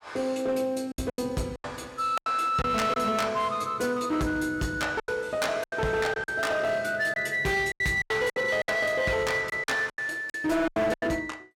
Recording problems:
distorted audio; hard clipping, signal-to-distortion ratio 10 dB
packet loss; 11% of the sound replaced, filled with silence

